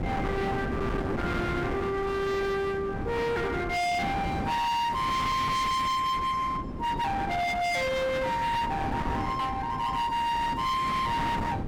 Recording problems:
distorted audio; hard clipping, uneven, signal-to-distortion ratio 7 dB
wind on the microphone; below 770 Hz, SNR 6 dB

